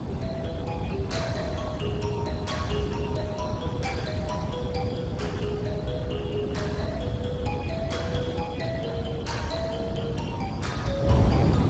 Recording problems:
lossy compression; Speex, log-spectral distance 4 dB, nothing above 7.6 kHz
wind noise; below 360 Hz, SNR -2 dB

